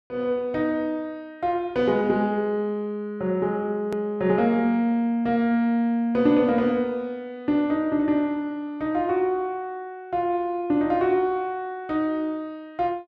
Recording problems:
edit click; at 4 s

